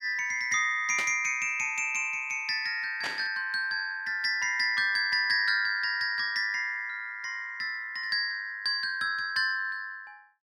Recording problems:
burst of static; at 1 s and at 3 s; peak -3 dB vs average level

